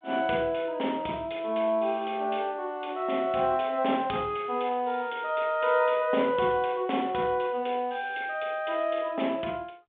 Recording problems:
phone line; 240 Hz to 3.5 kHz, G.726

